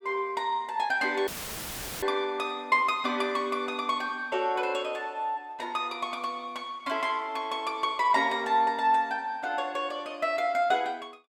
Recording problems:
audio cutting out; at 1.5 s for 1 s; filled with static

